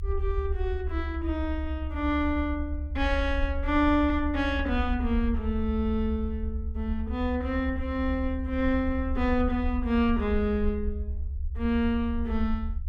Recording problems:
rumble; below 72 Hz, SNR 5 dB

